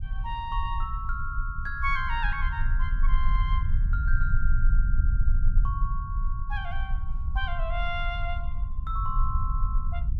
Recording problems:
low-frequency rumble; below 52 Hz, strongest tone 20 Hz, SNR -4 dB

